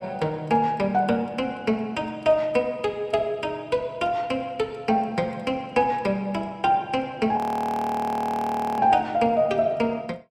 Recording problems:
audio freezing; at 7.5 s for 1.5 s

